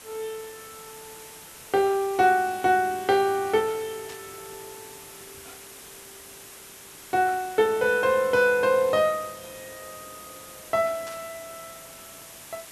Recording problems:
hiss; slope -1 dB per octave, SNR 19 dB
burst of static; at 4 s and at 11 s; peak -15 dB vs average level

